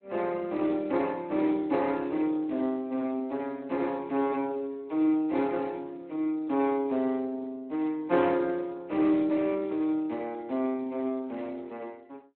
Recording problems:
telephone audio; 220 Hz to 3.2 kHz, Speex

